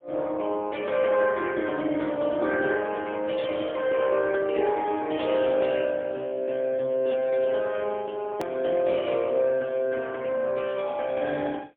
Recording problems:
telephone audio; 240 Hz to 3.5 kHz, AMR-NB, then MP3
edit click; at 8.5 s

